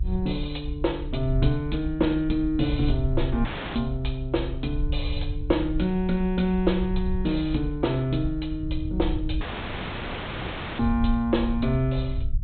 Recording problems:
low-pass filter; nothing above 4 kHz
rumble; below 64 Hz, SNR 6 dB
audio cutting out; at 3.5 s and at 9.5 s for 1.5 s

